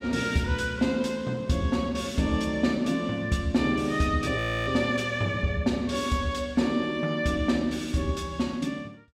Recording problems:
audio freezing; at 4.5 s

